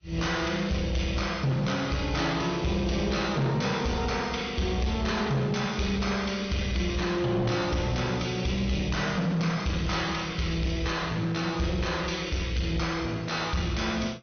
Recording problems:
low-pass filter; nothing above 6.2 kHz
lossy codec; AAC, log-spectral distance 3 dB
distortion; soft clipping, signal-to-distortion ratio 11 dB

